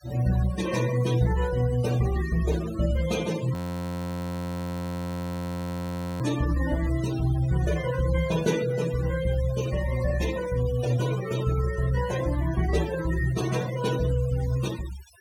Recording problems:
denoising artefacts; signal-to-artefact ratio 13 dB
frozen audio; at 3.5 s for 2.5 s

